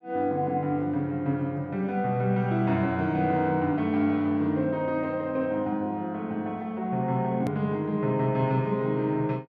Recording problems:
hard cut with a click; at 7.5 s

